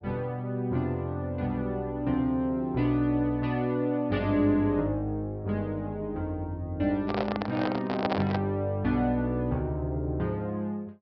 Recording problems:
treble missing; nothing above 5.5 kHz
handling noise; from 7 to 8.5 s; peak +4 dB vs average level

